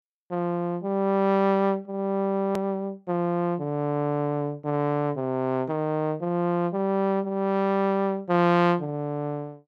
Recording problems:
click at an edit; at 2.5 s

